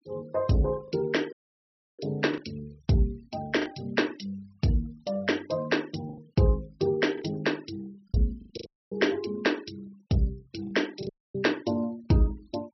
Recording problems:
treble cut off; nothing above 5.8 kHz
denoising artefacts; signal-to-artefact ratio 24 dB
packet loss; 4% of the sound replaced, filled with the last packet
dropout; at 1.5 s for 0.5 s, at 8.5 s and at 11 s

